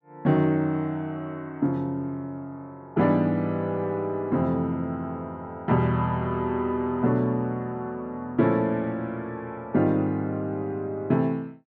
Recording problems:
none

